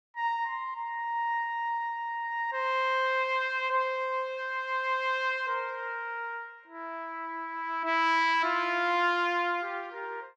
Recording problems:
none

